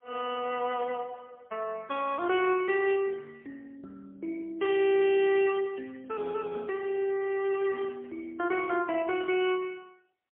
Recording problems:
telephone audio; 280 Hz to 3.5 kHz, AMR-NB, then MP3

